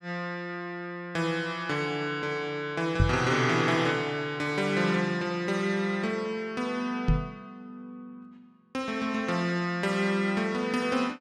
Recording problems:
microphone bump; at 3 s and at 7 s; peak +8 dB vs average level

